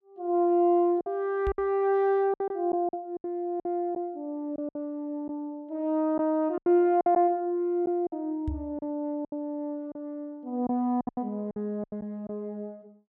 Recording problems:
packet loss; 9% of the sound replaced, filled with silence
microphone bump; at 1.5 s and at 8.5 s; peak -1 dB vs average level

